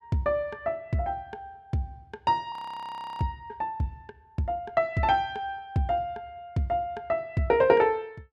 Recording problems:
audio freezing; at 2.5 s for 0.5 s

